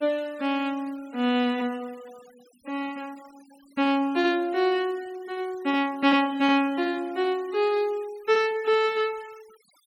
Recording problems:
noise reduction artefacts; signal-to-artefact ratio 25 dB

